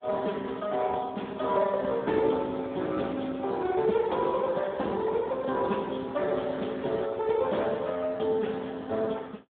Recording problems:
telephone audio; 190 Hz to 3.7 kHz, Speex

